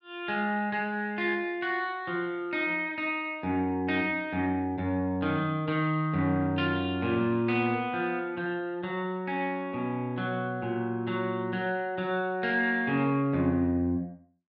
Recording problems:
none

